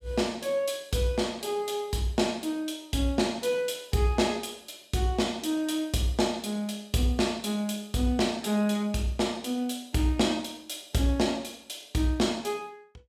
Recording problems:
none

